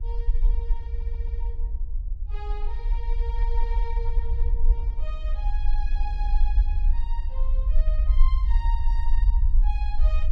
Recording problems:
low-frequency rumble; below 46 Hz, SNR -15 dB
wind on the microphone; below 310 Hz, SNR 15 dB
audio stuttering; at 1 s

